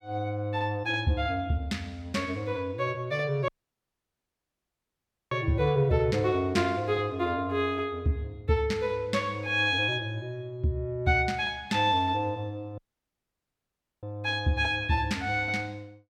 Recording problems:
audio cutting out; at 3.5 s for 2 s and at 13 s for 1.5 s

